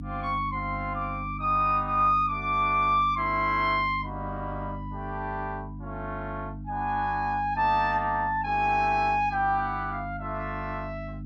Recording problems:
electrical hum; 50 Hz, harmonics up to 300 Hz, SNR 12 dB

